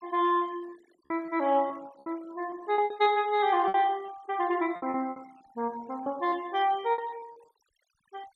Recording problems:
denoising artefacts; signal-to-artefact ratio 24 dB
lost packets; 10% of the sound replaced, filled with repeated pitch periods

